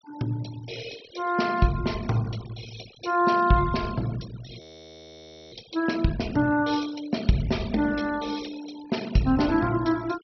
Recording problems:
treble cut off; nothing above 5.8 kHz
noise reduction artefacts; signal-to-artefact ratio 18 dB
audio freezing; at 4.5 s for 1 s

